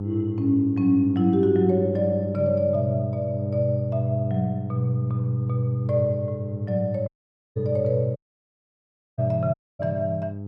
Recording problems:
electrical hum; 50 Hz, harmonics up to 500 Hz, SNR 8 dB
audio cutting out; at 7 s, at 8 s for 1 s and at 9.5 s

